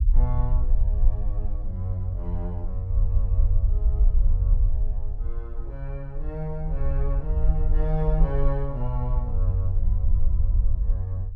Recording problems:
low-frequency rumble; below 52 Hz, SNR -5 dB

